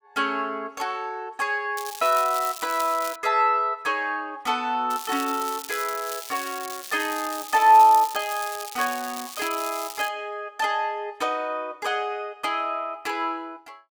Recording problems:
crackling; from 2 to 3 s and from 5 to 10 s; loose cable, SNR 11 dB

